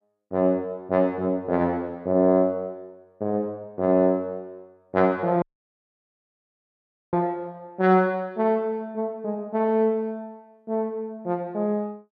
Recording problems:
audio cutting out; at 5.5 s for 1.5 s

